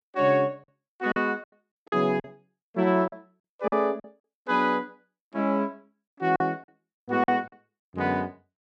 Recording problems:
lost packets; 9% of the sound replaced, filled with silence

